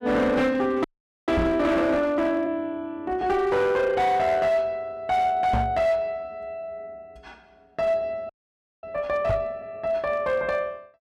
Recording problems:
distortion; hard clipping, uneven, signal-to-distortion ratio 11 dB
frozen audio; at 1 s and at 8.5 s for 0.5 s
knock on the microphone; at 1.5 s, at 5.5 s and at 9.5 s; peak +3 dB vs average level

